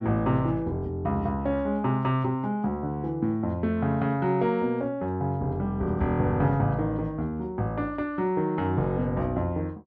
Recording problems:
none

